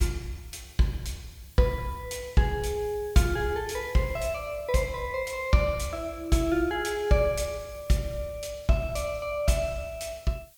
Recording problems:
hiss; slope +3 dB per octave, SNR 25 dB

